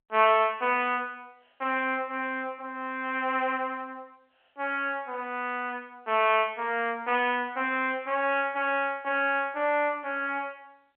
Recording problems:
telephone audio; 320 Hz to 3.3 kHz, G.711

